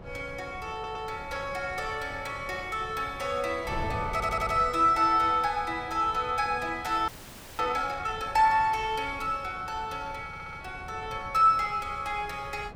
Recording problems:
wind on the microphone; below 490 Hz, SNR 16 dB
audio stuttering; at 0.5 s, at 4 s and at 10 s
audio freezing; at 7 s for 0.5 s

